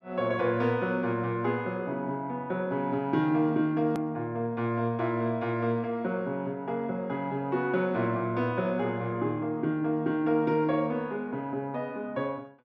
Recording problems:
hard cut with a click; at 4 s

